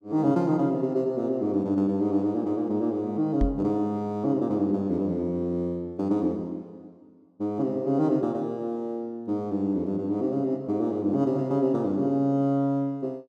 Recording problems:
knock on the microphone; at 3.5 s; peak +2 dB vs average level

